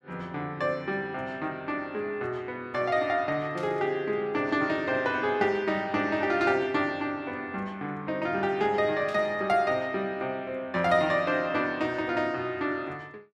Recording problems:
burst of static; at 3.5 s and at 9 s; peak -13 dB vs average level

